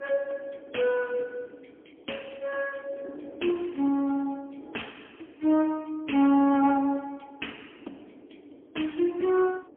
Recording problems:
telephone audio; 240 Hz to 3.3 kHz, AMR-NB, then MP3
wind noise; below 450 Hz, SNR 22 dB

